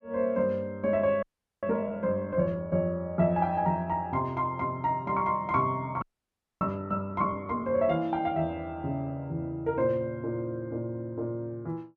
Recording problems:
audio freezing; at 1 s and at 6 s for 0.5 s

